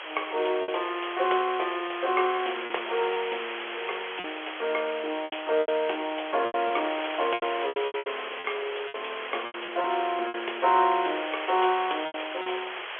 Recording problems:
telephone audio; 340 Hz to 3.4 kHz, G.711
background hiss; SNR 7 dB
wind on the microphone; below 750 Hz, SNR 21 dB
packet loss; 9% of the sound replaced, filled with repeated pitch periods

